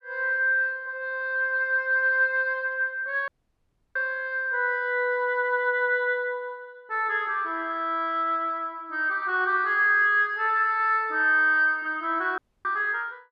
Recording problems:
dropout; at 3.5 s for 0.5 s and at 12 s

